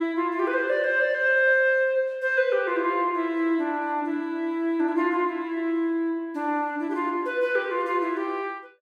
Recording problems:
none

